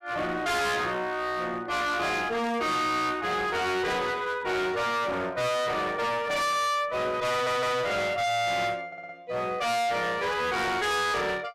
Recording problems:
distorted audio; hard clipping, uneven, signal-to-distortion ratio 5 dB
burst of static; at 2.5 s; peak -16 dB vs average level
audio stuttering; at 7.5 s and at 9 s

